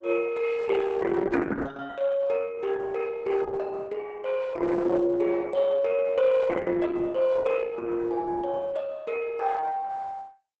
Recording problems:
lossy compression; Opus, log-spectral distance 4 dB, nothing above 8 kHz

